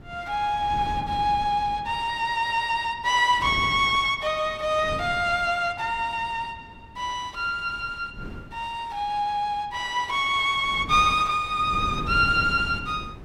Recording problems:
wind noise; below 280 Hz, SNR 15 dB

